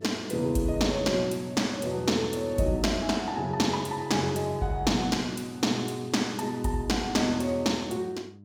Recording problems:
mains hum; 50 Hz, harmonics up to 600 Hz, SNR 22 dB

